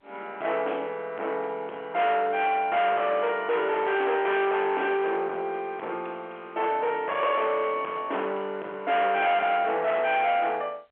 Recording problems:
telephone audio; 370 Hz to 3.4 kHz, G.711
distorted audio; soft clipping, signal-to-distortion ratio 8 dB

